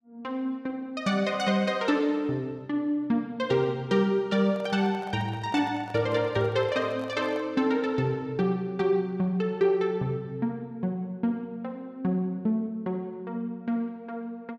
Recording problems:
handling noise; from 4.5 to 7.5 s; peak -10 dB vs average level

